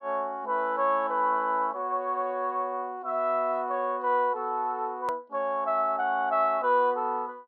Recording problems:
low-pass filter; nothing above 5.5 kHz
edit click; at 5 s

